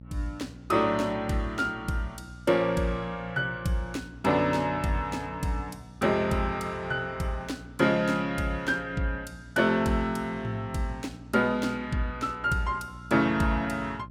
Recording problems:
hum; 60 Hz, harmonics up to 600 Hz, SNR 18 dB

